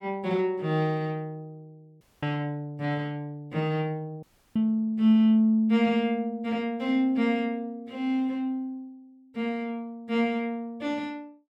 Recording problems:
dropout; at 2 s and at 4 s

